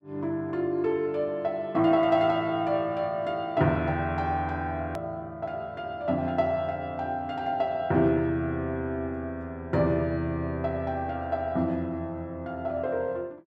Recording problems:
edit click; at 5 s

